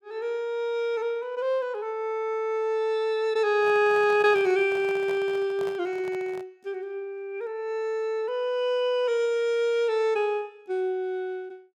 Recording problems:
microphone handling noise; from 3.5 to 6.5 s; peak -10 dB vs average level

